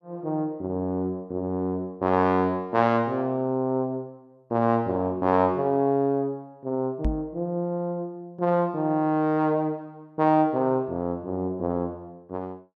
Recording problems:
knock on the microphone; at 7 s; peak +2 dB vs average level

